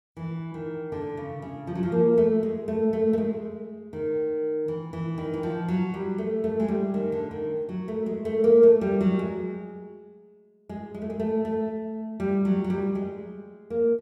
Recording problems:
none

